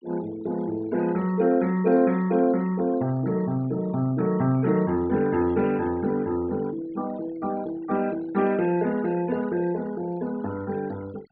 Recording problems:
treble missing; nothing above 4.6 kHz
noise reduction artefacts; signal-to-artefact ratio 21 dB

